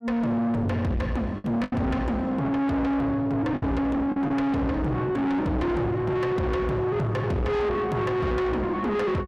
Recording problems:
distortion; soft clipping, signal-to-distortion ratio 6 dB
lost packets; 3% of the sound replaced, filled with the last packet

